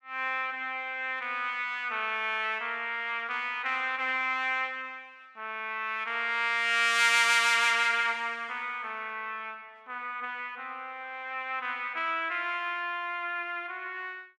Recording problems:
none

